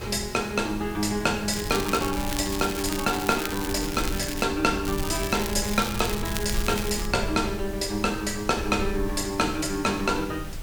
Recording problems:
background hiss; slope -3 dB per octave, SNR 17 dB
wind noise; below 88 Hz, SNR 11 dB
crackle; from 1.5 to 4.5 s and from 5 to 7 s; loose cable, SNR 8 dB

